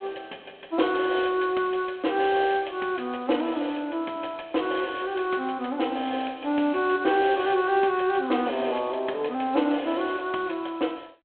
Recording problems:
phone line; 220 Hz to 3.6 kHz, G.726

